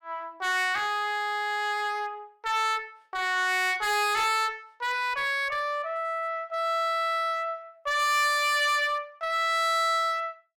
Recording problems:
distorted audio; hard clipping, uneven, signal-to-distortion ratio 5 dB

